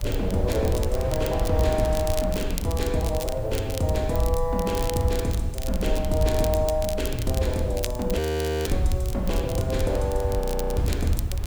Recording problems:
background hiss; slope -3 dB per octave, SNR 26 dB
rumble; below 78 Hz, SNR 5 dB
wind noise; below 530 Hz, SNR 13 dB
crackling; vinyl, SNR 12 dB
frozen audio; at 8 s and at 10 s

